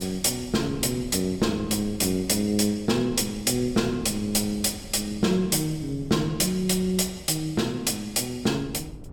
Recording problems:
wind on the microphone; below 230 Hz, SNR 18 dB

